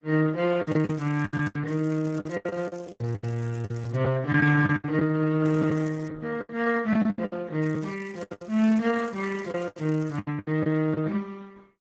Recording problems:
lossy codec; Speex, then Opus, log-spectral distance 4 dB
packet loss; 15% of the sound replaced, filled with the last packet
crackling; 4 times, first at 0.5 s; loose cable, SNR 27 dB

